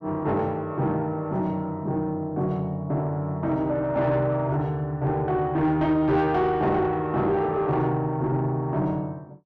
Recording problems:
distorted audio; soft clipping, signal-to-distortion ratio 10 dB

